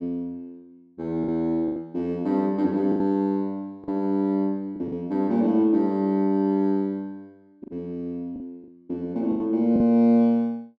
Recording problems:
lost packets; 6% of the sound replaced, filled with the last packet

